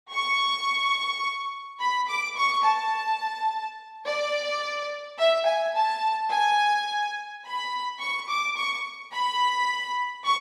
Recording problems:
none

